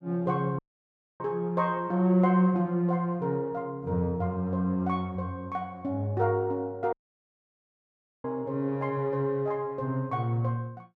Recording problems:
audio cutting out; at 0.5 s for 0.5 s and at 7 s for 1.5 s

